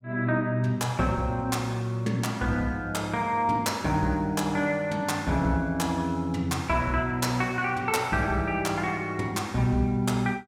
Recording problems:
none

